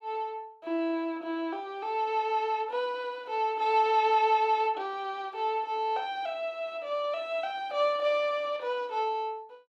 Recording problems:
none

